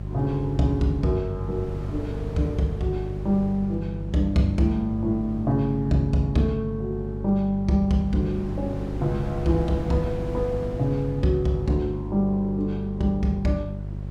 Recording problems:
hum; 50 Hz, harmonics up to 600 Hz, SNR 8 dB
wind noise; below 280 Hz, SNR 15 dB

